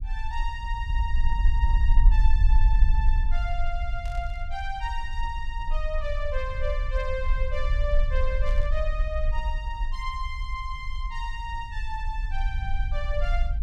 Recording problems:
rumble; below 50 Hz, strongest tone 20 Hz, SNR -6 dB
burst of static; at 4 s and at 8.5 s; peak -10 dB vs average level

